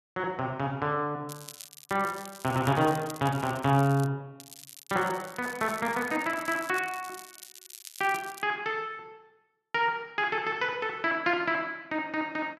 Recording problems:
crackling; from 1.5 to 4 s and from 4.5 to 8.5 s; loose cable, SNR 16 dB

